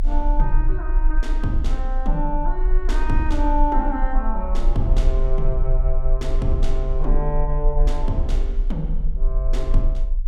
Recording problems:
rumble; below 36 Hz, strongest tone 22 Hz, SNR -3 dB

